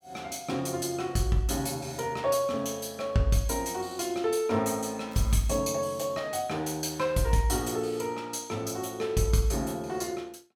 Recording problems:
crackling; at 5 s; loose cable, SNR 24 dB

